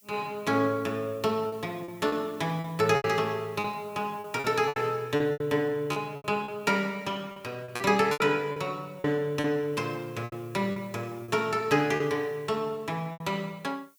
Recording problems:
background hiss; SNR 28 dB
lost packets; 10% of the sound replaced, filled with repeated pitch periods

